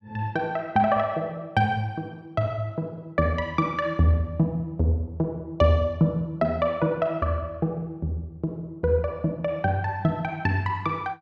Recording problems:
none

